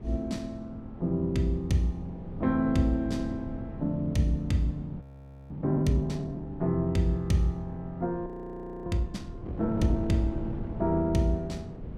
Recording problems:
wind noise; below 250 Hz, SNR 11 dB
audio freezing; at 5 s and at 8.5 s for 0.5 s

